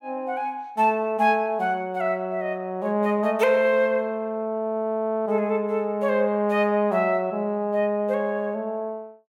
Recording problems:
none

